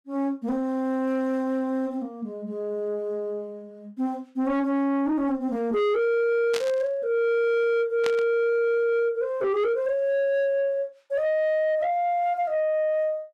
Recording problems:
distorted audio; soft clipping, signal-to-distortion ratio 11 dB
burst of static; at 6.5 s and at 8 s; peak -2 dB vs average level

